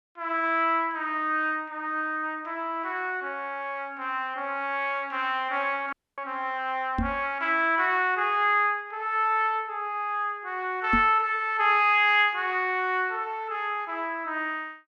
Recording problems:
dropout; at 6 s
microphone bump; at 7 s and at 11 s; peak +2 dB vs average level

